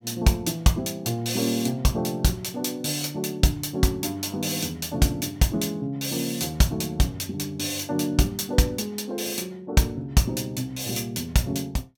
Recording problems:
none

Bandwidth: 17.5 kHz